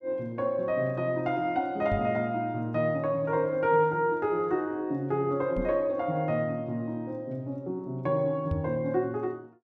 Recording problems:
microphone bump; at 2 s, at 5.5 s and at 8.5 s; peak +1 dB vs average level

